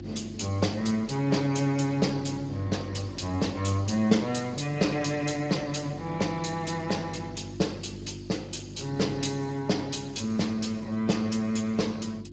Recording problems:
codec artefacts; Speex, log-spectral distance 5 dB, nothing above 7.3 kHz
electrical hum; 50 Hz, harmonics up to 400 Hz, SNR 14 dB

